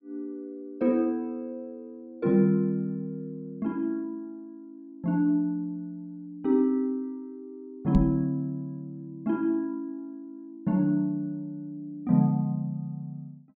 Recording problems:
microphone bump; at 8 s; peak +6 dB vs average level

